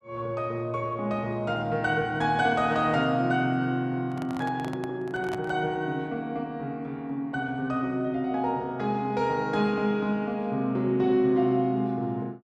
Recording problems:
microphone handling noise; from 4 to 5.5 s; peak -6 dB vs average level

